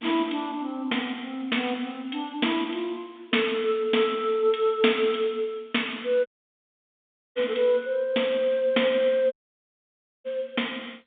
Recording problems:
telephone audio; 260 Hz to 3.6 kHz, G.711
dropout; at 6.5 s for 1 s and at 9.5 s for 1 s

